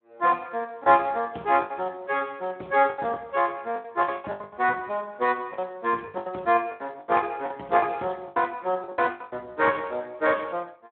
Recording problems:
phone line; 280 Hz to 3.7 kHz, Speex
lost packets; 13% of the sound replaced, filled with the last packet

